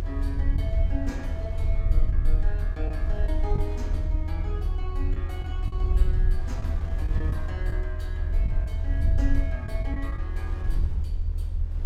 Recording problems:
hum; 50 Hz, harmonics up to 1.8 kHz, SNR 17 dB
rumble; below 76 Hz, SNR -10 dB
wind noise; below 590 Hz, SNR 11 dB
packet loss; 4% of the sound replaced, filled with the last packet

